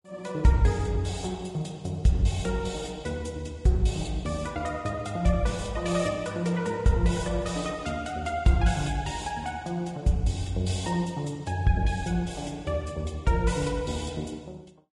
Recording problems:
codec artefacts; Vorbis, log-spectral distance 3 dB

